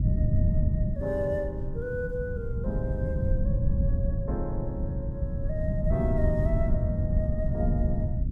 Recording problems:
rumble; below 140 Hz, SNR -5 dB

